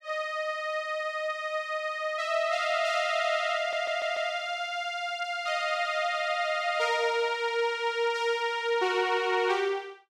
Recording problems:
audio stuttering; at 3.5 s

